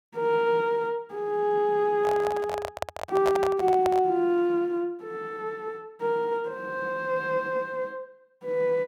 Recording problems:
handling noise; from 2 to 4 s; peak +1 dB vs average level

